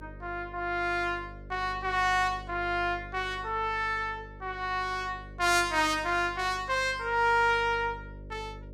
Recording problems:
hum; 50 Hz, harmonics up to 600 Hz, SNR 18 dB

